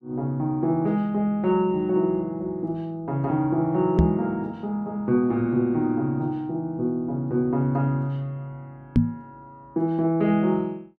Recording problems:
microphone bump; at 4 s and at 9 s; peak +9 dB vs average level

